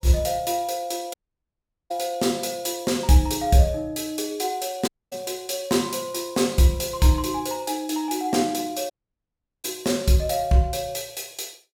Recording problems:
dropout; at 1 s for 1 s, at 5 s and at 9 s for 0.5 s

